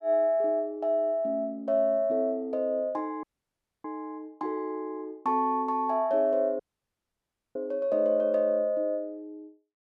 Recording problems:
audio cutting out; at 3 s for 0.5 s and at 6.5 s for 1 s

